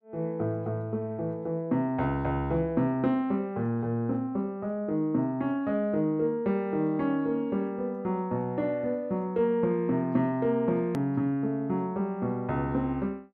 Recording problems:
hard cut with a click; at 11 s

